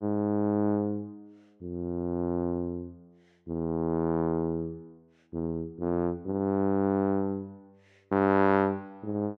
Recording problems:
none

